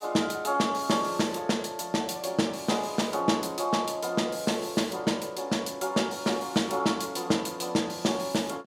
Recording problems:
none

